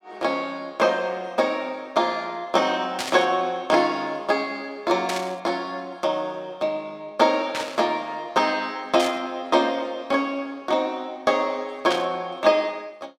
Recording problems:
burst of static; 5 times, first at 3 s; peak 0 dB vs average level

